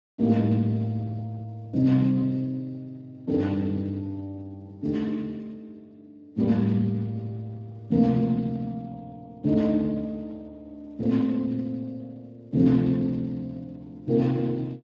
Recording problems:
lossy codec; Speex, log-spectral distance 2 dB

